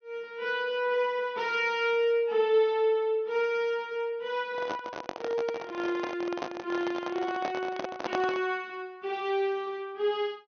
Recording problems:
treble missing; nothing above 6.3 kHz
handling noise; from 4.5 to 8.5 s; peak +1 dB vs average level

